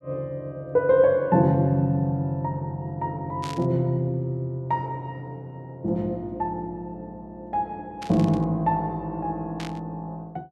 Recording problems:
burst of static; at 3.5 s, at 8 s and at 9.5 s; peak -8 dB vs average level

